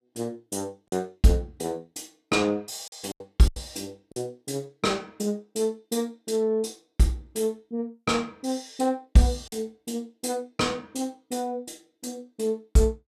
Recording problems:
packet loss; 3% of the sound replaced, filled with silence

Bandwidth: 14.5 kHz